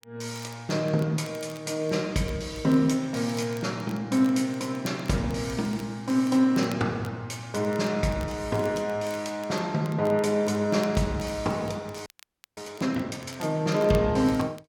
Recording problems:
crackle; vinyl, SNR 24 dB
audio freezing; at 12 s for 0.5 s

